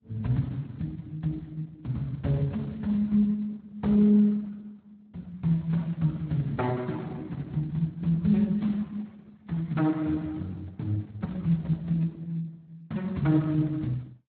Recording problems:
codec artefacts; Opus, then Speex, log-spectral distance 3 dB, nothing above 17.1 kHz

